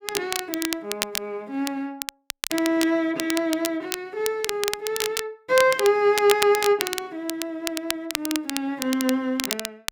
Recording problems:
crackling; vinyl, SNR 5 dB

